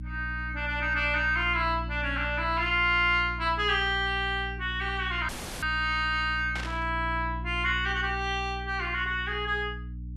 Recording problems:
hum; 60 Hz, harmonics up to 300 Hz, SNR 10 dB
audio cutting out; at 5.5 s
static burst; at 6.5 s; peak -6 dB vs average level

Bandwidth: 12.5 kHz